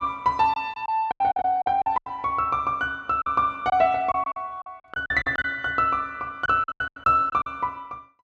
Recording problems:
packet loss; 12% of the sound replaced, filled with silence

